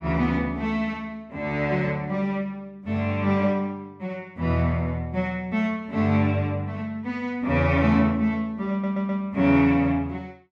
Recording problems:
stutter; at 8.5 s

